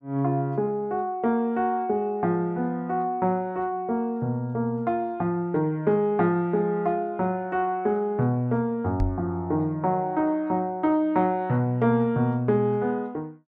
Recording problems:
microphone bump; at 9 s; peak 0 dB vs average level

